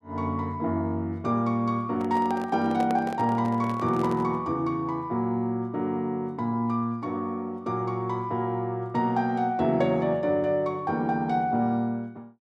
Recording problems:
handling noise; from 2 to 4.5 s; peak -2 dB vs average level

